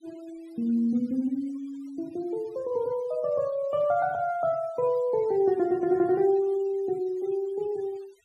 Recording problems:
noise reduction artefacts; signal-to-artefact ratio 26 dB

